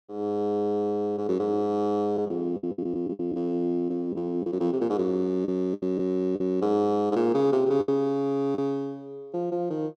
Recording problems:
lost packets; 6% of the sound replaced, filled with the last packet

